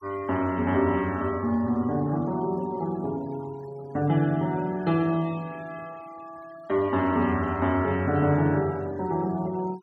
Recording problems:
noise reduction artefacts; signal-to-artefact ratio 25 dB

